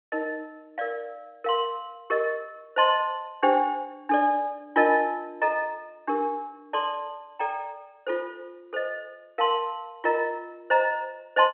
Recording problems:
telephone audio; 240 Hz to 3.4 kHz, G.711

